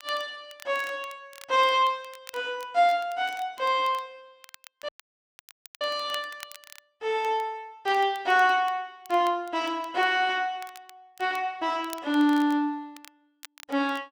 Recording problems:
crackle; vinyl, SNR 23 dB
audio cutting out; at 5 s for 1 s

